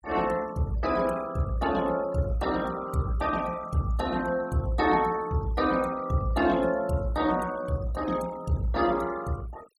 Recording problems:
denoising artefacts; signal-to-artefact ratio 19 dB

